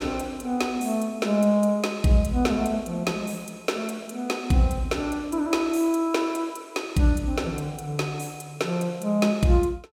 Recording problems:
none

